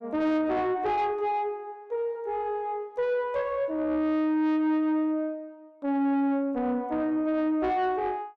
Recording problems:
distorted audio; soft clipping, signal-to-distortion ratio 12 dB

